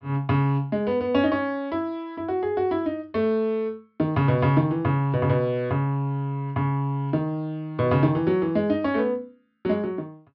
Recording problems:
treble missing; nothing above 5.5 kHz

